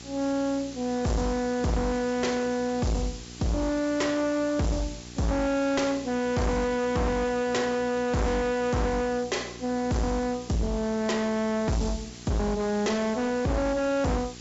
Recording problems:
treble cut off; nothing above 8 kHz
distortion; hard clipping, signal-to-distortion ratio 6 dB
hum; 60 Hz, harmonics up to 1.6 kHz, SNR 19 dB
hiss; slope +3 dB per octave, SNR 17 dB

